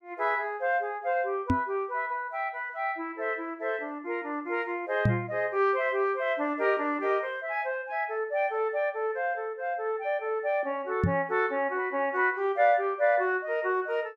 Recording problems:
microphone thump; at 1.5 s, at 5 s and at 11 s; peak +7 dB vs average level

